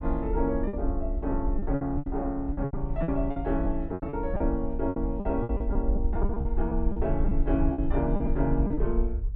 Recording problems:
rumble; below 56 Hz, SNR 2 dB
lost packets; 14% of the sound replaced, filled with repeated pitch periods

